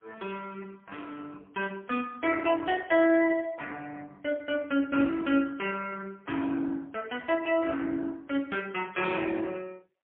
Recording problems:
phone line; 240 Hz to 3.3 kHz, AMR-NB, then MP3

